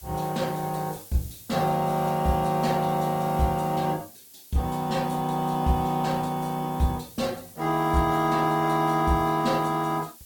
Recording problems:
codec artefacts; Opus, log-spectral distance 4 dB, nothing above 15.5 kHz
hiss; SNR 20 dB

